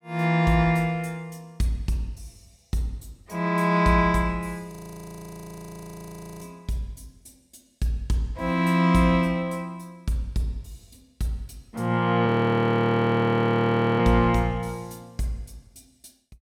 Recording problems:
audio freezing; at 4.5 s for 1.5 s and at 12 s for 1.5 s

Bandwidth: 16.5 kHz